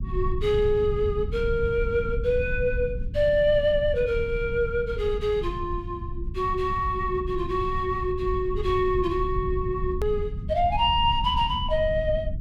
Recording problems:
rumble; below 94 Hz, SNR 8 dB
hard cut with a click; at 10 s

